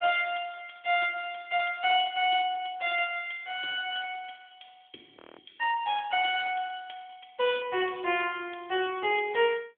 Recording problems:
telephone audio; 300 Hz to 3.5 kHz, AMR-NB
frozen audio; at 5 s

